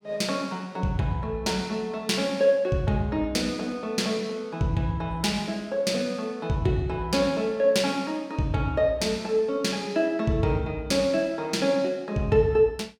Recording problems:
none

